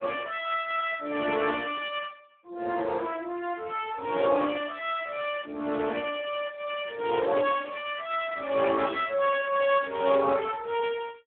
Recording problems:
phone line; 240 Hz to 3.5 kHz, Speex

